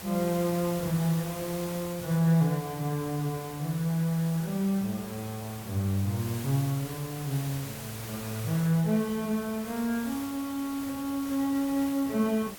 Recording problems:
background hiss; slope -2 dB per octave, SNR 12 dB

